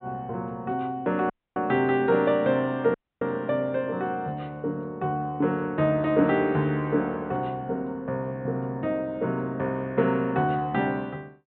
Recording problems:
treble cut off; nothing above 4 kHz
audio cutting out; at 1.5 s and at 3 s

